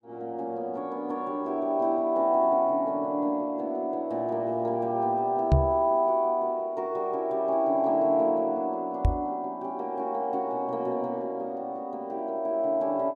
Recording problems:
knock on the microphone; at 5.5 s and at 9 s; peak +9 dB vs average level

